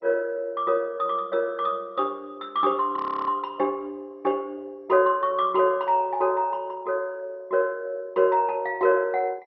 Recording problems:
codec artefacts; MP2, log-spectral distance 2 dB, nothing above 5.3 kHz
frozen audio; at 3 s

